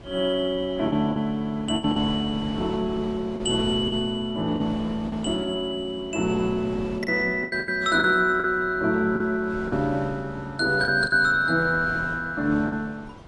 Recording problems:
codec artefacts; AAC, log-spectral distance 2 dB
wind on the microphone; below 680 Hz, SNR 16 dB
packet loss; 7% of the sound replaced, filled with the last packet

